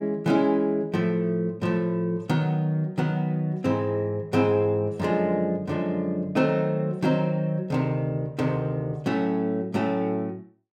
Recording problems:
none

